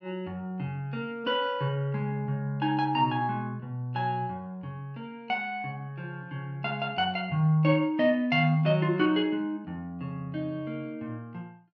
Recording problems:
none

